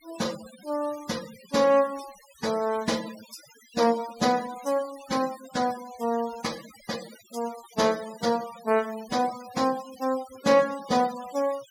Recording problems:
denoising artefacts; signal-to-artefact ratio 16 dB

